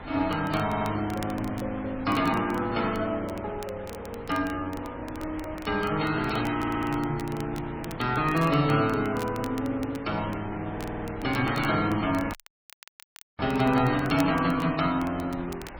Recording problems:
lossy codec; MP3, log-spectral distance 3 dB
wind on the microphone; below 1.2 kHz, SNR 13 dB
crackle; vinyl, SNR 21 dB
audio stuttering; 4 times, first at 0.5 s
dropout; at 12 s for 1 s

